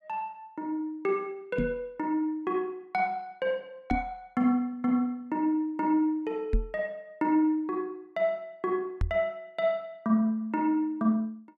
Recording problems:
microphone thump; 4 times, first at 1.5 s; peak +5 dB vs average level

